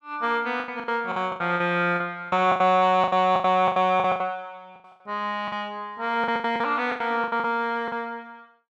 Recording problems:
lost packets; 16% of the sound replaced, filled with the last packet

